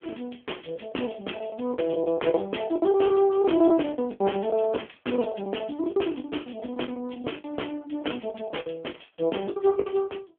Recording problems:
telephone audio; 260 Hz to 3.4 kHz, AMR-NB
packet loss; 15% of the sound replaced, filled with the last packet

